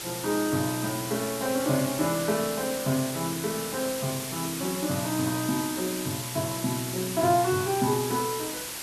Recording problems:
background hiss; slope 0 dB per octave, SNR 5 dB

